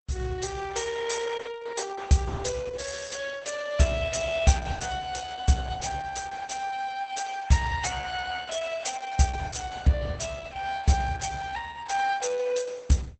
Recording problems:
codec artefacts; Opus, log-spectral distance 6 dB, nothing above 8.2 kHz

